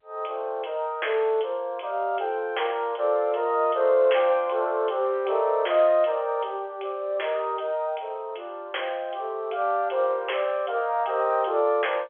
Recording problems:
phone line; 370 Hz to 3.4 kHz, G.711

